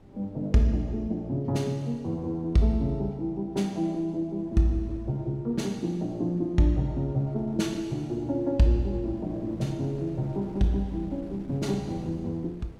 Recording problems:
wind noise; below 310 Hz, SNR 21 dB

